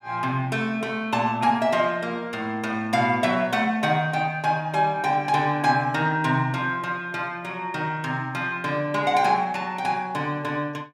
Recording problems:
none

